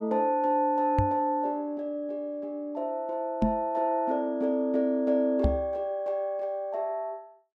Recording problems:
microphone thump; at 1 s, at 3.5 s and at 5.5 s; peak +6 dB vs average level

